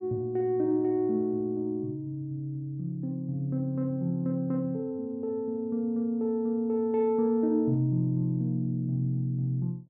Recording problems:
none

